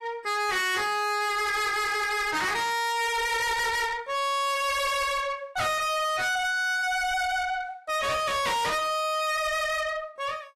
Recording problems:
codec artefacts; AAC, log-spectral distance 3 dB, nothing above 13.8 kHz
distorted audio; soft clipping, signal-to-distortion ratio 6 dB

